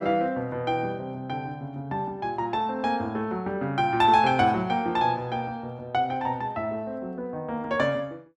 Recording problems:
none

